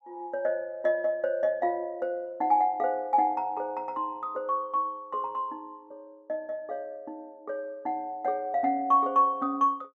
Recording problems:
none

